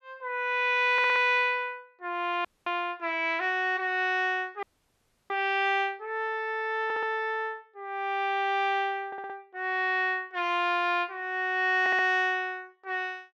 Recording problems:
stutter; 4 times, first at 1 s
dropout; at 2.5 s and at 4.5 s for 0.5 s

